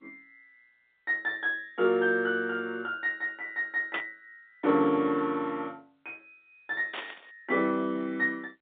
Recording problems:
telephone audio; 220 Hz to 3.7 kHz, G.711
burst of static; at 4 s and at 7 s; peak -1 dB vs average level

